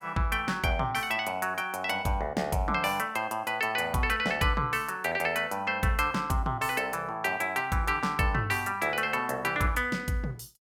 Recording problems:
none

